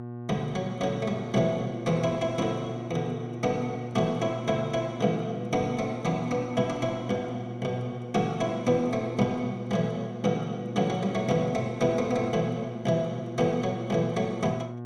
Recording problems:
hum; 60 Hz, harmonics up to 1.2 kHz, SNR 9 dB

